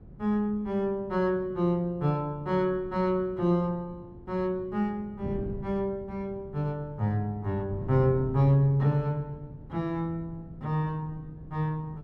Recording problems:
wind on the microphone; below 200 Hz, SNR 15 dB

